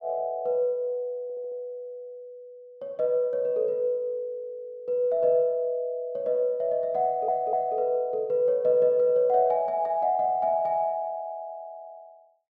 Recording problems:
audio stuttering; at 1 s and at 7 s

